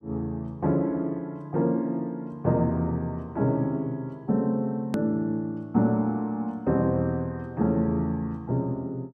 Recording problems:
edit click; at 5 s

